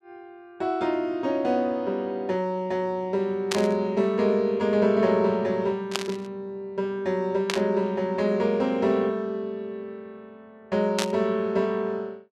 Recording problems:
static burst; 4 times, first at 3.5 s; peak +3 dB vs average level

